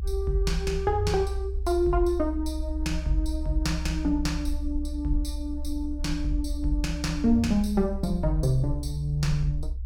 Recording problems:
low-frequency rumble; below 64 Hz, strongest tone 64 Hz, SNR 6 dB

